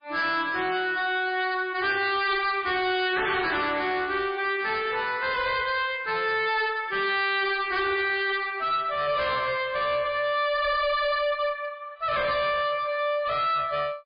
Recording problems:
lossy codec; MP3, log-spectral distance 4 dB, nothing above 4.8 kHz
distortion; hard clipping, uneven, signal-to-distortion ratio 7 dB

